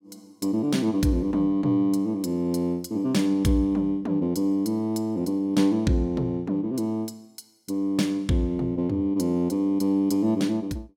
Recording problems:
none

